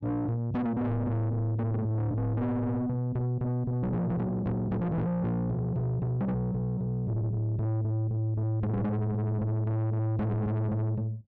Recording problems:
distortion; soft clipping, signal-to-distortion ratio 6 dB

